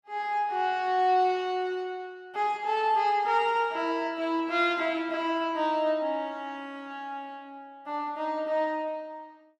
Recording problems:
none

